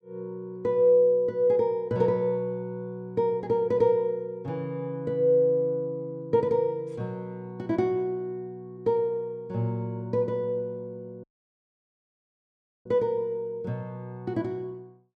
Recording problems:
dropout; at 11 s for 1.5 s

